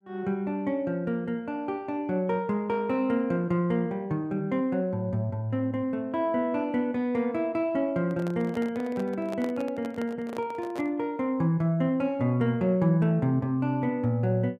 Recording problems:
handling noise; from 8 to 11 s; peak -6 dB vs average level

